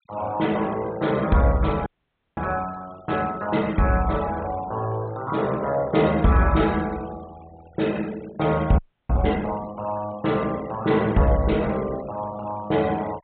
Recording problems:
treble cut off; nothing above 4 kHz
noise reduction artefacts; signal-to-artefact ratio 21 dB
frozen audio; at 2 s for 0.5 s and at 9 s

